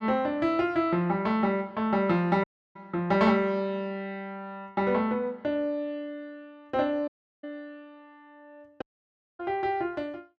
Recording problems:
dropout; at 2.5 s, at 7 s and at 9 s for 0.5 s

